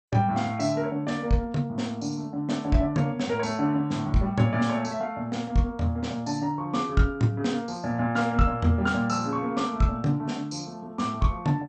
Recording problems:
codec artefacts; MP2, log-spectral distance 2 dB, nothing above 7.8 kHz

